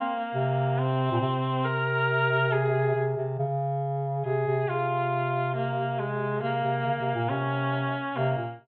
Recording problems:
treble missing; nothing above 4 kHz

